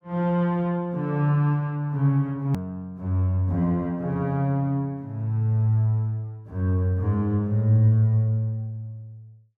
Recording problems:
click at an edit; at 2.5 s

